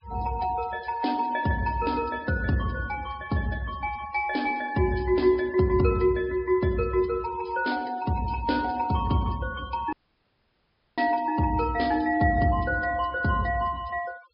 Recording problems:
treble missing; nothing above 5.1 kHz
denoising artefacts; signal-to-artefact ratio 22 dB
audio cutting out; at 10 s for 1 s

